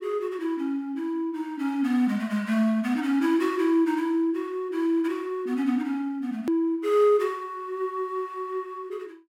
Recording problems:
edit click; at 6.5 s

